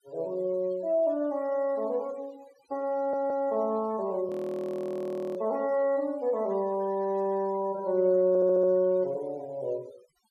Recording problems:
denoising artefacts; signal-to-artefact ratio 26 dB
audio stuttering; at 3 s and at 8.5 s
frozen audio; at 4.5 s for 1 s

